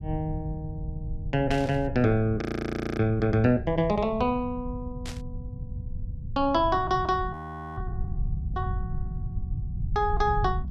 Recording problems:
rumble; below 110 Hz, SNR 9 dB
static burst; at 1.5 s and at 5 s; peak -9 dB vs average level
frozen audio; at 2.5 s for 0.5 s and at 7.5 s

